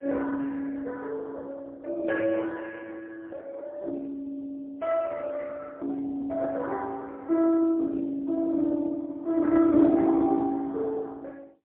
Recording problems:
telephone audio; 220 Hz to 2.2 kHz, AMR-NB, then MP3

